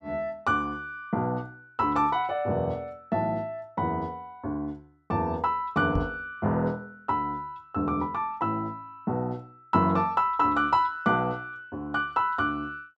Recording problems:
microphone thump; at 6 s; peak 0 dB vs average level

